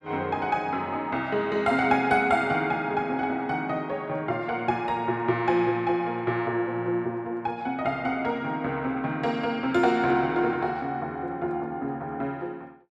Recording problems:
none

